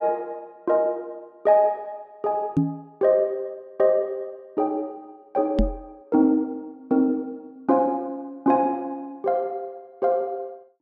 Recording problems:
knock on the microphone; at 2.5 s and at 5.5 s; peak +7 dB vs average level

